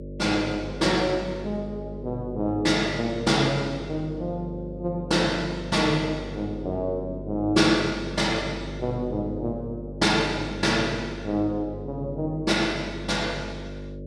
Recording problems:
electrical hum; 50 Hz, harmonics up to 600 Hz, SNR 11 dB

